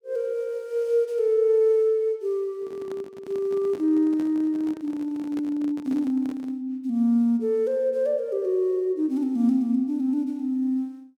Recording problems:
handling noise; from 2.5 to 6.5 s; peak -9 dB vs average level

